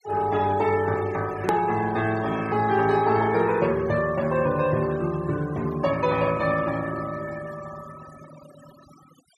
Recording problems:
noise reduction artefacts; signal-to-artefact ratio 18 dB
hard cut with a click; at 1.5 s

